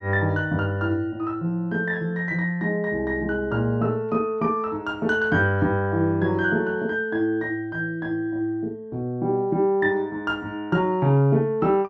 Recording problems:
none

